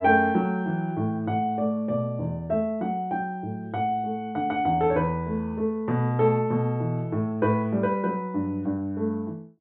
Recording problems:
treble missing; nothing above 3.9 kHz

